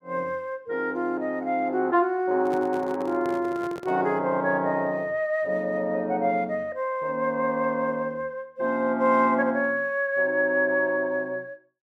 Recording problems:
handling noise; from 2.5 to 4 s; peak -7 dB vs average level

